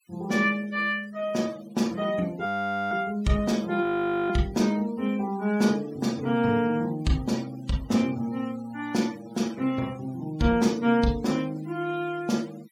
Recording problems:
noise reduction artefacts; signal-to-artefact ratio 22 dB
frozen audio; at 2.5 s and at 4 s

